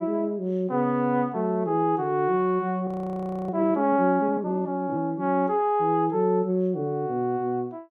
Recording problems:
audio freezing; at 3 s for 0.5 s

